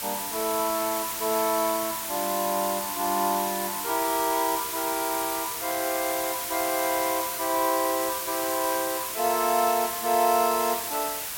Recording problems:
background hiss; slope +1 dB per octave, SNR 3 dB

